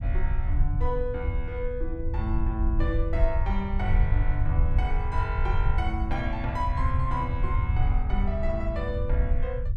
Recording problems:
low-frequency rumble; below 74 Hz, SNR -3 dB

